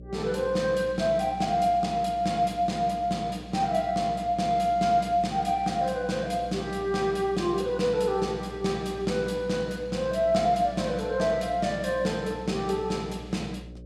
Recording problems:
hum; 60 Hz, harmonics up to 600 Hz, SNR 18 dB

